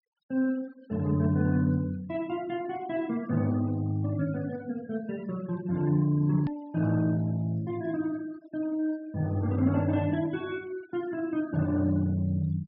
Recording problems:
low-pass filter; nothing above 5.5 kHz
denoising artefacts; signal-to-artefact ratio 23 dB
click at an edit; at 6.5 s

